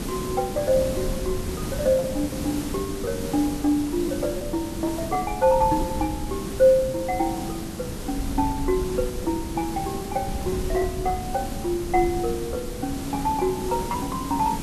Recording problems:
hiss; SNR 8 dB
wind noise; below 100 Hz, SNR 11 dB
lost packets; 7% of the sound replaced, filled with repeated pitch periods

